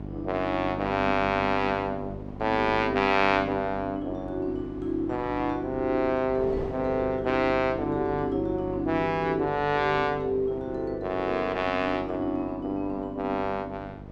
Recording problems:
electrical hum; 50 Hz, harmonics up to 800 Hz, SNR 13 dB
wind noise; below 630 Hz, SNR 19 dB

